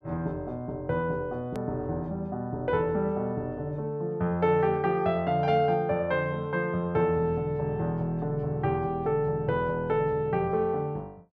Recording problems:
edit click; at 1.5 s

